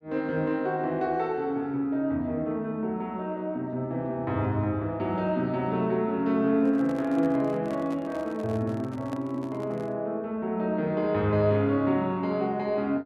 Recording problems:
handling noise; from 6.5 to 10 s; peak -8 dB vs average level

